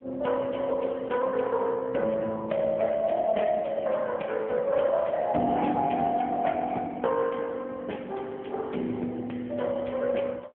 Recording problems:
telephone audio; 220 Hz to 3.4 kHz, AMR-NB

